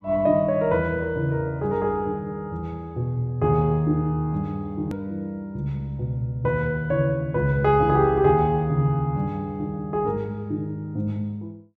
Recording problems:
click at an edit; at 5 s

